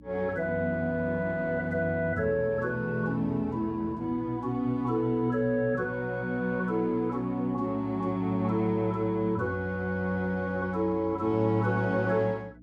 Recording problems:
hum; 60 Hz, harmonics up to 300 Hz, SNR 22 dB

